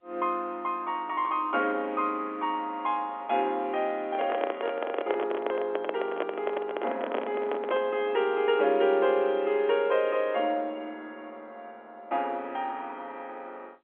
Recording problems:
telephone audio; 240 Hz to 3.6 kHz, G.711
microphone handling noise; from 4 to 8 s; peak +2 dB vs average level

